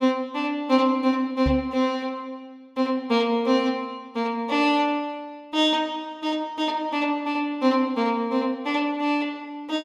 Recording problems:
microphone thump; at 1.5 s; peak +1 dB vs average level

